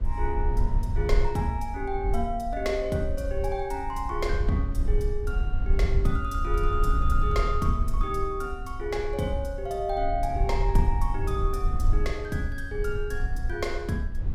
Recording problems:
rumble; below 58 Hz, SNR 0 dB

